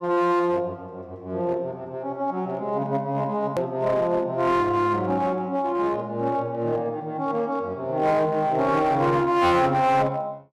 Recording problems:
distorted audio; hard clipping, uneven, signal-to-distortion ratio 11 dB
edit click; at 3.5 s

